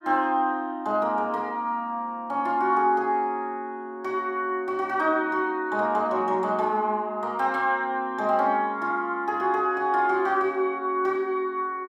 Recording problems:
none

